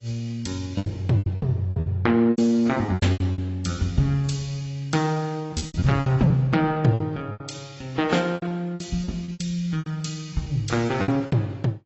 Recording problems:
lossy compression; AAC, log-spectral distance 3 dB, nothing above 7.8 kHz
packet loss; 15% of the sound replaced, filled with repeated pitch periods

